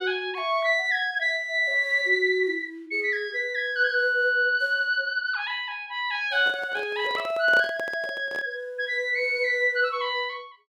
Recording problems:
handling noise; from 6.5 to 8.5 s; peak -5 dB vs average level

